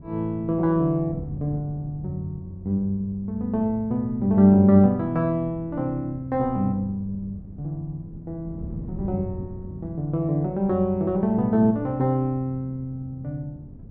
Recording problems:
wind noise; below 200 Hz, SNR 17 dB

